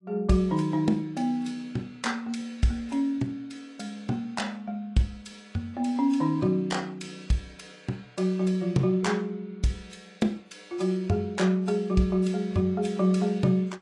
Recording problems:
lossy compression; AAC, log-spectral distance 2 dB, nothing above 10.1 kHz

